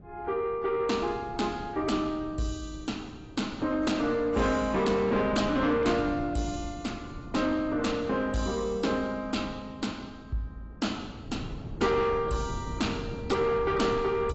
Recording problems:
lossy compression; AAC, log-spectral distance 3 dB, nothing above 7.6 kHz
distortion; soft clipping, signal-to-distortion ratio 11 dB
wind noise; below 280 Hz, SNR 13 dB

